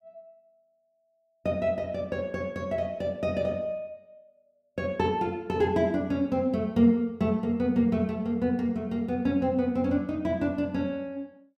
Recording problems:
none

